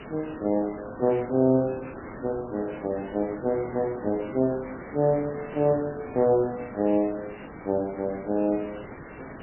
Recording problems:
lossy codec; MP3, log-spectral distance 17 dB
background hiss; SNR 13 dB

